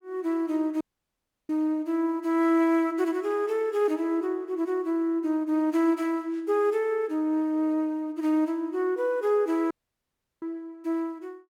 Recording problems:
dropout; at 1 s for 0.5 s and at 9.5 s for 0.5 s

